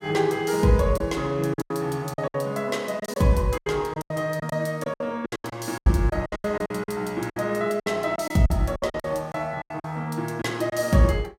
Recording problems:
lost packets; 14% of the sound replaced, filled with silence

